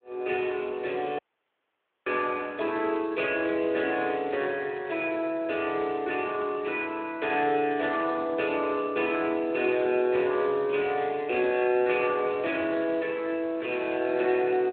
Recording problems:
phone line; 300 Hz to 3.5 kHz, Speex
audio cutting out; at 1 s for 1 s

